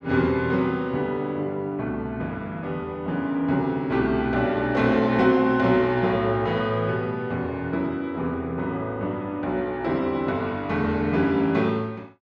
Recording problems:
none

